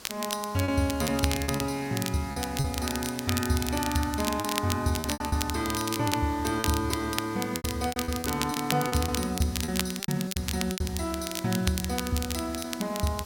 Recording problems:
hiss; SNR 17 dB
crackling; vinyl, SNR 6 dB
lost packets; 10% of the sound replaced, filled with repeated pitch periods

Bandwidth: 16.5 kHz